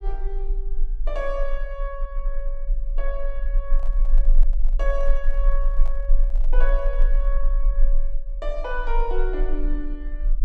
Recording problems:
low-frequency rumble; below 32 Hz, strongest tone 22 Hz, SNR -7 dB
handling noise; from 3.5 to 7.5 s; peak -7 dB vs average level

